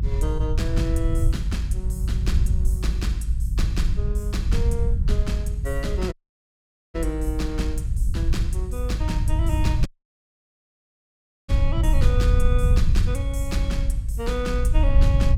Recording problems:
low-frequency rumble; below 78 Hz, SNR -7 dB
audio cutting out; at 6 s for 1 s and at 10 s for 1.5 s

